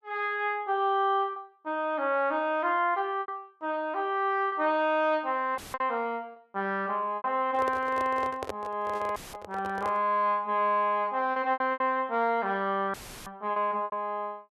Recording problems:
lost packets; 6% of the sound replaced, filled with repeated pitch periods
dropout; at 5.5 s, at 9 s and at 13 s; filled with static
microphone handling noise; from 7.5 to 10 s; peak -2 dB vs average level

